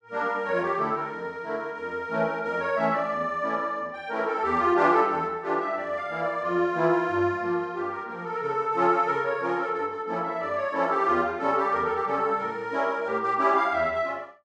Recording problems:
none

